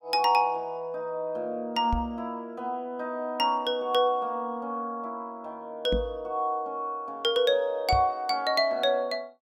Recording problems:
knock on the microphone; at 2 s, at 6 s and at 8 s; peak +1 dB vs average level

